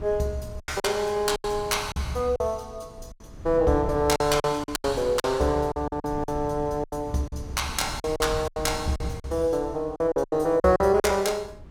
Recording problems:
wind noise; below 160 Hz, SNR 15 dB
packet loss; 12% of the sound replaced, filled with silence

